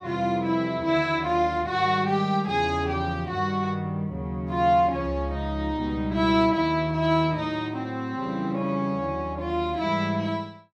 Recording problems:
none

